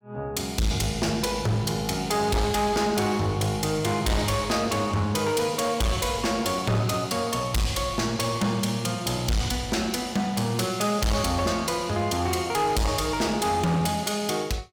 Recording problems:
distorted audio; hard clipping, signal-to-distortion ratio 8 dB

